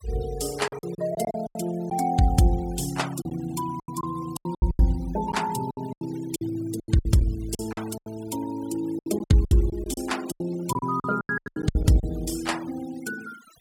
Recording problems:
denoising artefacts; signal-to-artefact ratio 18 dB
packet loss; 14% of the sound replaced, filled with silence

